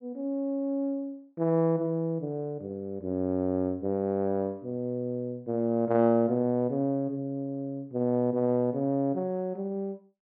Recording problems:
treble cut off; nothing above 5.5 kHz

